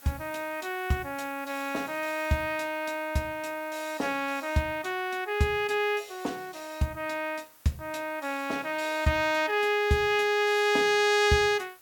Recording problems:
hiss; slope -1 dB per octave, SNR 24 dB

